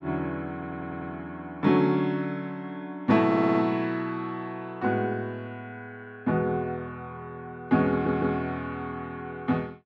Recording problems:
audio stuttering; at 0.5 s, at 3.5 s and at 8 s

